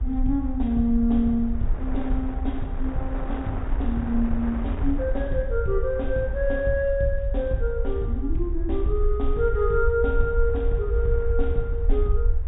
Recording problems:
low-pass filter; nothing above 4 kHz
rumble; below 58 Hz, SNR 3 dB
wind noise; below 940 Hz, SNR 15 dB

